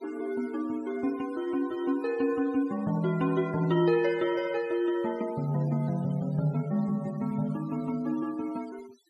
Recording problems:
denoising artefacts; signal-to-artefact ratio 21 dB

